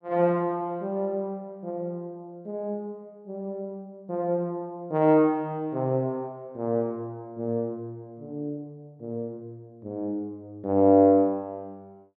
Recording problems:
none

